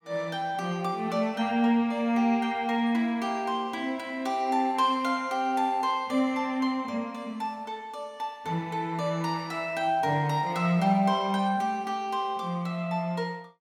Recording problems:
none

